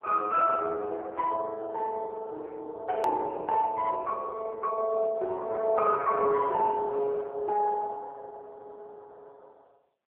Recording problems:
phone line; 340 Hz to 2.6 kHz, AMR-NB
edit click; at 3 s

